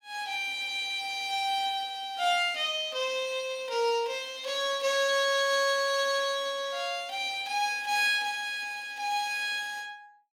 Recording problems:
none

